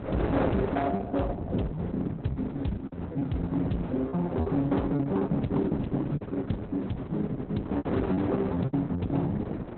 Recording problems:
lossy codec; Opus, log-spectral distance 2 dB, nothing above 4.1 kHz
distortion; hard clipping, signal-to-distortion ratio 12 dB
mains hum; 60 Hz, harmonics up to 720 Hz, SNR 22 dB
wind on the microphone; below 590 Hz, SNR 7 dB
packet loss; 8% of the sound replaced, filled with repeated pitch periods

